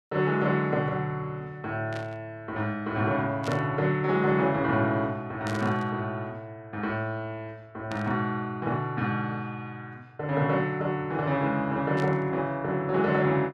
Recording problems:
burst of static; 5 times, first at 2 s; peak -7 dB vs average level

